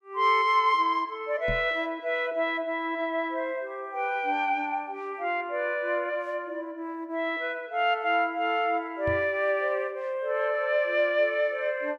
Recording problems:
microphone bump; at 1.5 s and at 9 s; peak -4 dB vs average level

